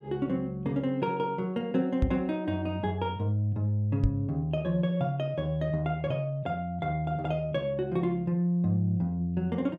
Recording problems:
knock on the microphone; at 2 s and at 4 s; peak +6 dB vs average level

